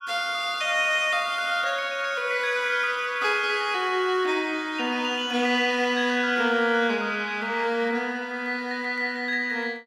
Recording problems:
none

